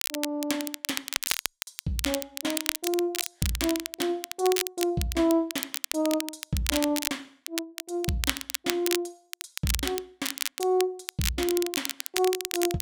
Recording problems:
crackling; vinyl, SNR 2 dB

